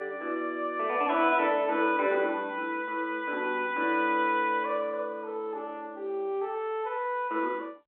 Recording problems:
telephone audio; 260 Hz to 3.5 kHz, G.711

